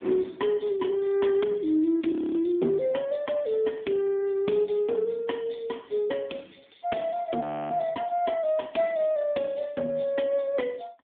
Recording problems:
telephone audio; 190 Hz to 3.6 kHz, AMR-NB
frozen audio; at 2 s and at 7.5 s

